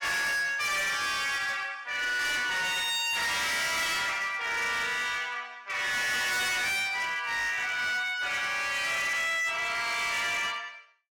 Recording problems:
distorted audio; hard clipping, signal-to-distortion ratio 7 dB

